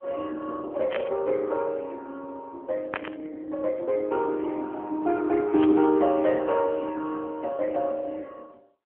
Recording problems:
phone line; 240 Hz to 2.8 kHz, AMR-NB
burst of static; at 1 s, at 3 s and at 5.5 s; peak 0 dB vs average level

